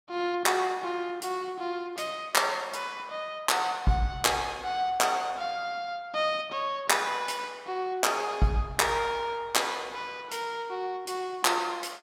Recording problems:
none

